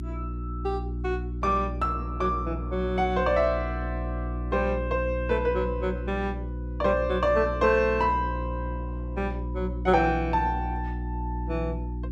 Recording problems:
electrical hum; 60 Hz, harmonics up to 360 Hz, SNR 6 dB

